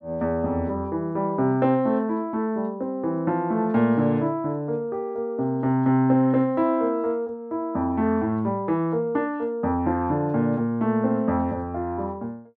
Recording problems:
none

